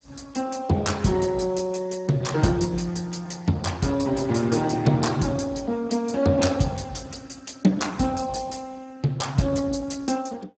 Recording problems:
lossy codec; Speex, log-spectral distance 5 dB, nothing above 7.6 kHz

